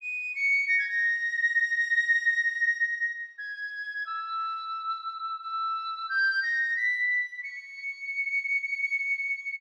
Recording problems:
none

